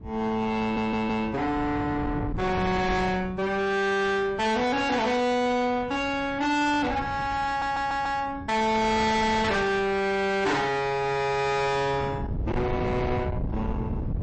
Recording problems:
lossy codec; MP3, log-spectral distance 2 dB, nothing above 8.2 kHz
distorted audio; soft clipping, signal-to-distortion ratio 7 dB
wind noise; below 360 Hz, SNR 9 dB
stutter; at 0.5 s and at 7.5 s

